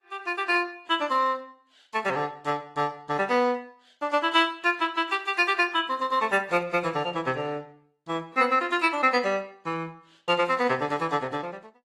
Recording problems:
codec artefacts; AAC, then Opus, log-spectral distance 3 dB, nothing above 15.1 kHz

